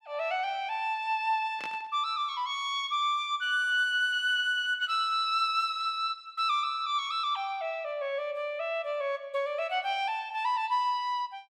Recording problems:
static burst; at 1.5 s; peak -7 dB vs average level

